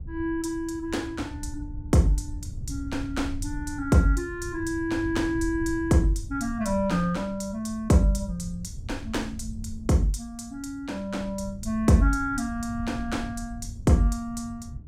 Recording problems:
wind on the microphone; below 100 Hz, SNR 12 dB

